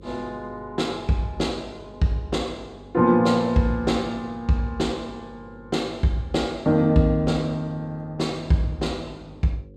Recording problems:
mains hum; 50 Hz, harmonics up to 550 Hz, SNR 23 dB

